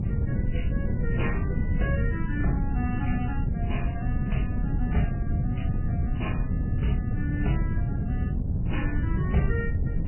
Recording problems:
codec artefacts; Vorbis, then MP3, log-spectral distance 2 dB, nothing above 3 kHz
wind on the microphone; below 150 Hz, SNR -5 dB

